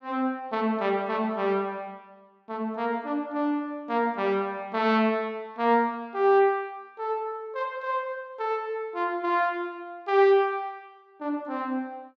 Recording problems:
none

